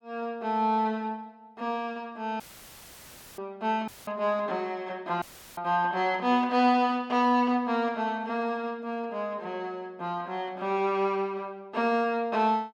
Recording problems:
dropout; at 2.5 s for 1 s, at 4 s and at 5 s; filled with static

